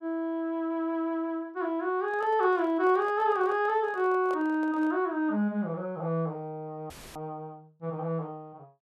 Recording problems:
microphone handling noise; from 2 to 5 s; peak -9 dB vs average level
dropout; at 7 s; filled with static

